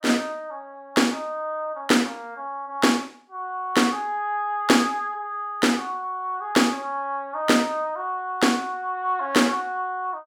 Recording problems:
none

